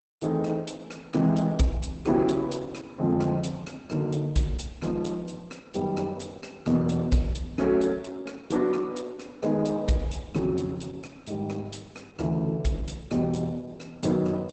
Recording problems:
codec artefacts; Opus, log-spectral distance 4 dB, nothing above 8.2 kHz

